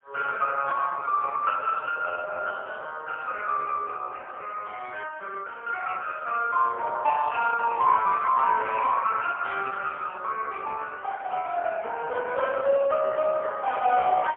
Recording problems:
phone line; 370 Hz to 3.5 kHz, AMR-NB, then MP3

